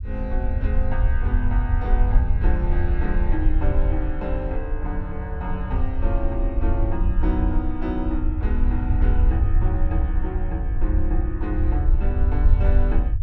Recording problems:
rumble; below 66 Hz, SNR -6 dB

